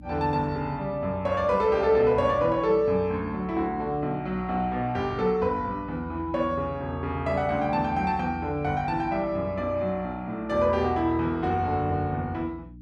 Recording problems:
hum; 60 Hz, harmonics up to 300 Hz, SNR 19 dB

